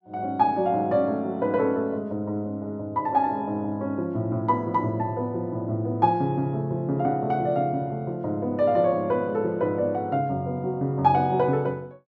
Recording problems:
none

